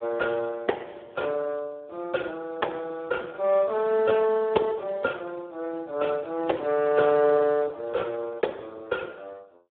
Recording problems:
phone line; 300 Hz to 2.3 kHz, Speex

